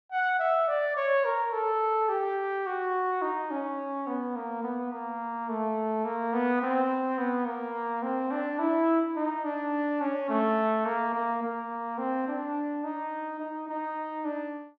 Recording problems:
none

